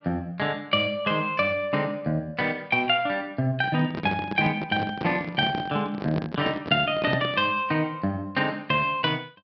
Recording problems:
treble missing; nothing above 5.5 kHz
microphone handling noise; from 3.5 to 7.5 s; peak +1 dB vs average level

